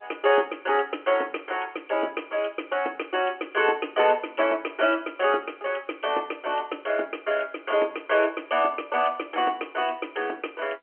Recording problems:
telephone audio; 260 Hz to 3.2 kHz, G.711

